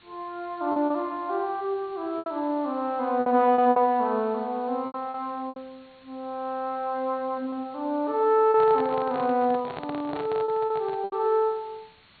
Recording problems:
treble missing; nothing above 4.4 kHz
background hiss; SNR 29 dB
packet loss; 7% of the sound replaced, filled with repeated pitch periods
handling noise; from 8.5 to 11 s; peak -6 dB vs average level

